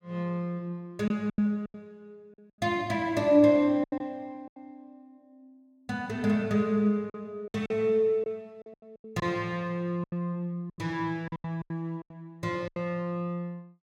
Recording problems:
packet loss; 10% of the sound replaced, filled with silence

